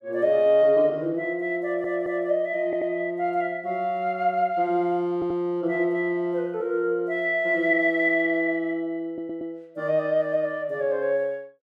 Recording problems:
audio stuttering; 4 times, first at 1.5 s

